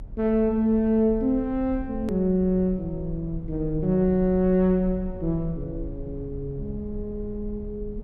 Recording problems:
low-frequency rumble; below 72 Hz, SNR 14 dB
edit click; at 2 s

